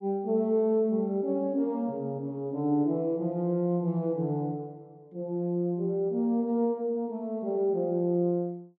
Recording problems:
none

